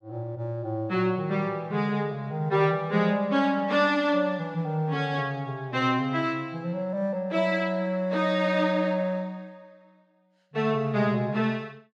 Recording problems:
none

